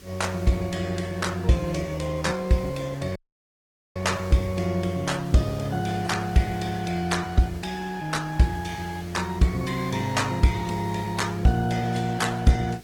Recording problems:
lossy codec; AAC, then Opus, log-spectral distance 4 dB, nothing above 15.5 kHz
hum; 50 Hz, harmonics up to 500 Hz, SNR 26 dB
background hiss; SNR 24 dB
audio cutting out; at 3 s for 1 s

